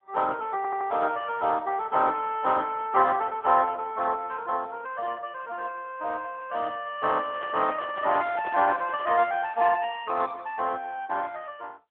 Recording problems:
telephone audio; 240 Hz to 3.4 kHz, AMR-NB
audio stuttering; at 0.5 s
handling noise; from 7.5 to 9 s; peak -8 dB vs average level

